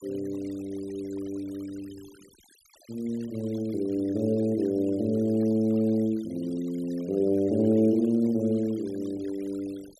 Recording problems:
denoising artefacts; signal-to-artefact ratio 25 dB

